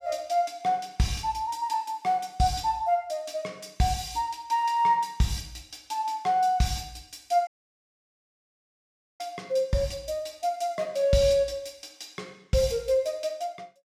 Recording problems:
dropout; at 7.5 s for 1.5 s

